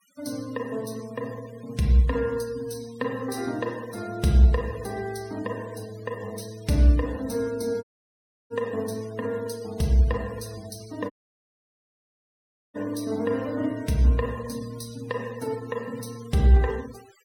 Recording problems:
denoising artefacts; signal-to-artefact ratio 22 dB
dropout; at 8 s for 0.5 s and at 11 s for 1.5 s

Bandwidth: 17.5 kHz